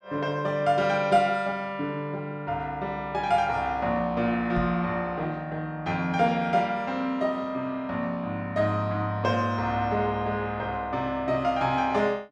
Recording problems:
microphone thump; at 4.5 s; peak -3 dB vs average level

